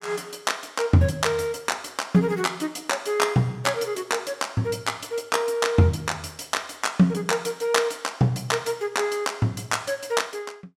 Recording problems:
none

